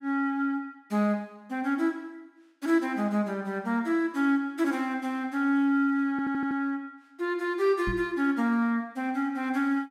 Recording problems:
audio stuttering; at 6 s
microphone thump; at 8 s; peak -2 dB vs average level

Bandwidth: 16 kHz